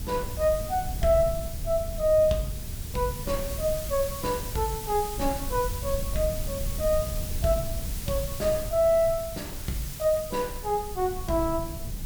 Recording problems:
background hiss; slope +3 dB per octave, SNR 10 dB
low-frequency rumble; below 100 Hz, SNR 9 dB

